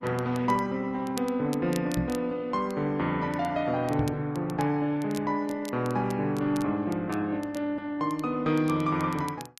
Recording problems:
codec artefacts; Opus, log-spectral distance 2 dB
crackling; vinyl, SNR 20 dB
microphone thump; at 2 s and at 4 s; peak +2 dB vs average level

